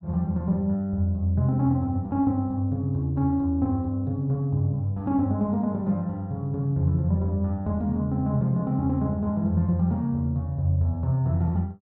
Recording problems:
none

